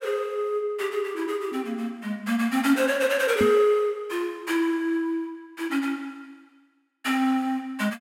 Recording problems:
microphone bump; at 3.5 s; peak +3 dB vs average level

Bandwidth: 16 kHz